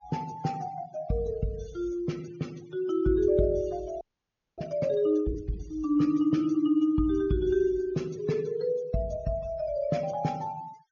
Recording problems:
treble missing; nothing above 6.8 kHz
noise reduction artefacts; signal-to-artefact ratio 25 dB
audio freezing; at 4 s for 0.5 s

